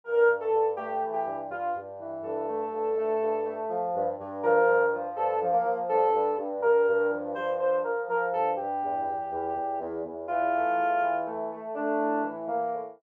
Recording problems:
none

